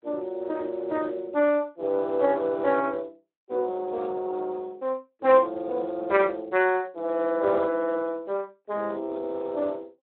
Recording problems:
phone line; 260 Hz to 2.9 kHz, Speex

